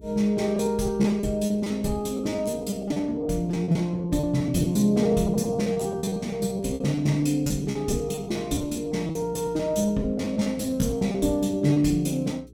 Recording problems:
hum; 60 Hz, harmonics up to 420 Hz, SNR 24 dB
packet loss; 17% of the sound replaced, filled with repeated pitch periods

